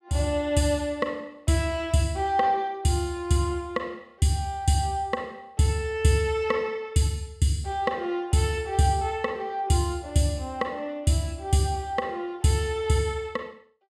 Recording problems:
none

